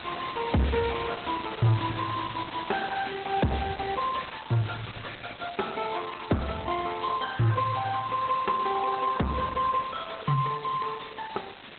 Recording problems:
lossy compression; Opus, log-spectral distance 16 dB, nothing above 3.9 kHz
distortion; hard clipping, signal-to-distortion ratio 10 dB
hiss; SNR 12 dB

